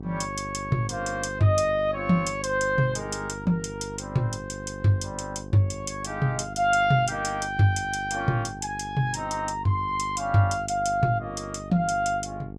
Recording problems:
electrical hum; 50 Hz, harmonics up to 850 Hz, SNR 13 dB

